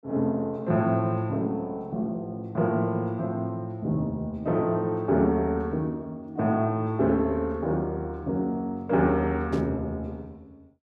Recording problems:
burst of static; at 9.5 s; peak -15 dB vs average level

